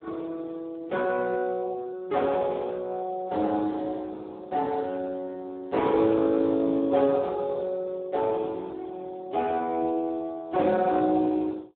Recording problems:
phone line; 240 Hz to 2.3 kHz, Speex

